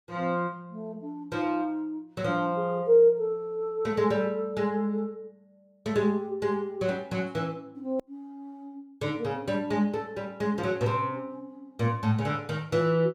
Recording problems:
edit click; at 8 s

